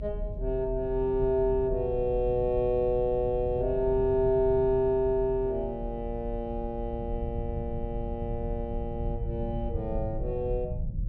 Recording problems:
hum; 60 Hz, harmonics up to 540 Hz, SNR 21 dB
rumble; below 94 Hz, strongest tone 40 Hz, SNR 8 dB

